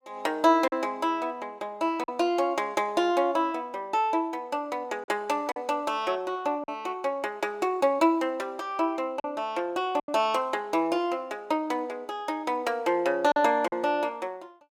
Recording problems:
lost packets; 3% of the sound replaced, filled with silence

